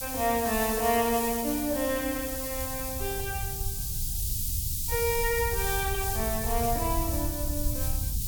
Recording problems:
hiss; SNR 2 dB
wind noise; below 90 Hz, SNR 7 dB

